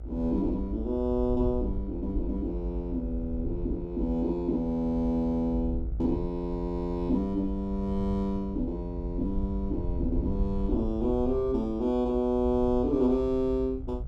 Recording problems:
hum; 60 Hz, harmonics up to 1.6 kHz, SNR 25 dB
low-frequency rumble; below 72 Hz, SNR 7 dB

